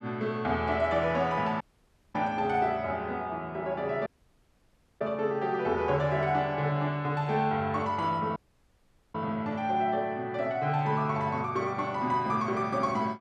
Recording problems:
dropout; at 1.5 s for 0.5 s, at 4 s for 1 s and at 8.5 s for 1 s

